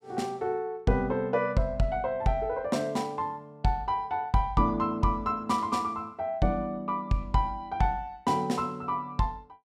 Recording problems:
none

